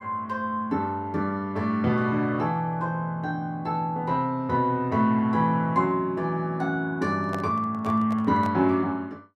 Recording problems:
handling noise; from 7 to 8.5 s; peak -5 dB vs average level

